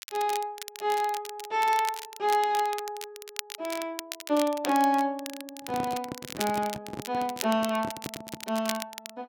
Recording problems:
crackle; vinyl, SNR 11 dB
handling noise; from 5.5 to 8.5 s; peak -4 dB vs average level

